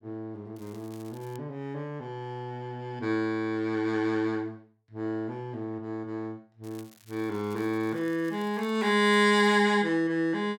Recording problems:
crackle; at 0.5 s and from 6.5 to 9.5 s; loose cable, SNR 27 dB

